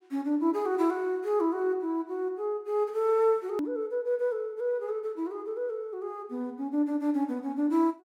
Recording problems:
edit click; at 3.5 s

